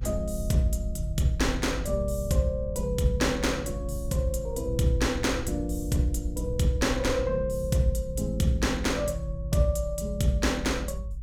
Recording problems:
low-frequency rumble; below 70 Hz, strongest tone 52 Hz, SNR 7 dB

